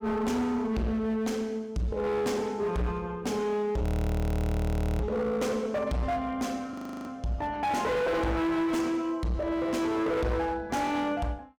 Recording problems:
distorted audio; hard clipping, signal-to-distortion ratio 8 dB
frozen audio; at 4 s for 1 s and at 6.5 s

